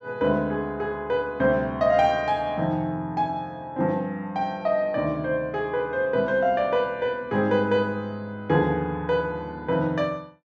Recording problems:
none

